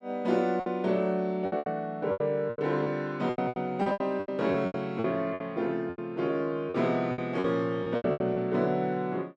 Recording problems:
packet loss; 15% of the sound replaced, filled with repeated pitch periods

